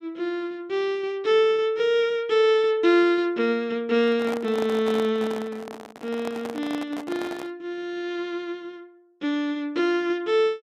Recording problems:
microphone handling noise; from 4 to 7.5 s; peak -5 dB vs average level

